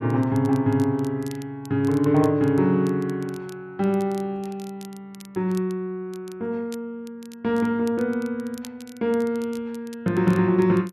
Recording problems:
crackle; vinyl, SNR 25 dB

